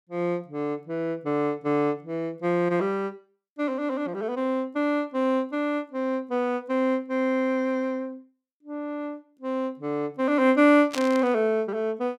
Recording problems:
static burst; at 11 s; peak -3 dB vs average level

